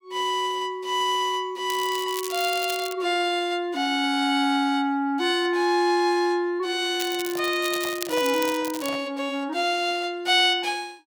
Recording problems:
crackling; from 1.5 to 3 s and from 7 to 9 s; loose cable, SNR 11 dB
handling noise; from 7 to 9 s; peak -9 dB vs average level

